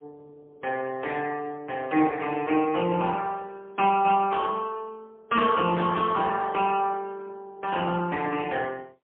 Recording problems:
phone line; 220 Hz to 3.1 kHz, AMR-NB, then MP3

